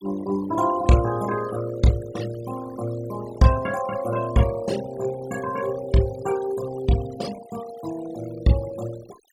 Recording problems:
noise reduction artefacts; signal-to-artefact ratio 15 dB

